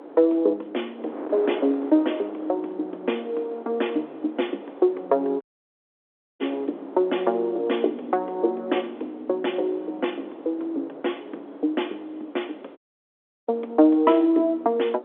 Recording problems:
telephone audio; 260 Hz to 3.5 kHz, G.711
wind noise; below 660 Hz, SNR 15 dB
dropout; at 5.5 s for 1 s and at 13 s for 0.5 s

